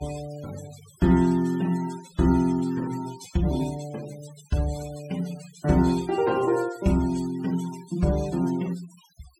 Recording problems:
noise reduction artefacts; signal-to-artefact ratio 19 dB

